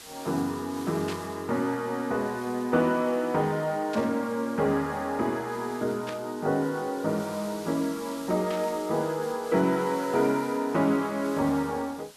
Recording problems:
background hiss; slope 0 dB per octave, SNR 18 dB
burst of static; 4 times, first at 1 s; peak -6 dB vs average level

